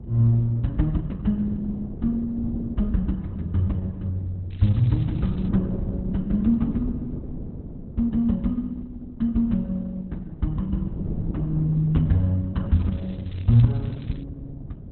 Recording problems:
lossy codec; Opus, log-spectral distance 2 dB, nothing above 4 kHz
wind on the microphone; below 240 Hz, SNR 11 dB
crackle; at 4.5 s and from 13 to 14 s; loose cable, SNR 27 dB

